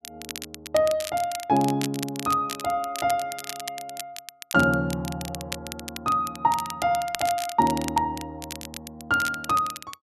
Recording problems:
crackle; vinyl, SNR 11 dB

